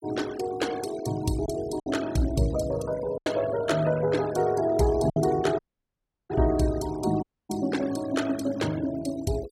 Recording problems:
noise reduction artefacts; signal-to-artefact ratio 16 dB
lost packets; 3% of the sound replaced, filled with silence
audio cutting out; at 5.5 s for 0.5 s and at 7 s

